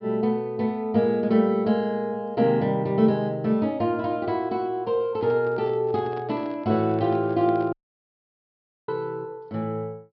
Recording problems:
low-pass filter; nothing above 5.5 kHz
microphone handling noise; from 5 to 7.5 s; peak -11 dB vs average level
dropout; at 7.5 s for 1 s

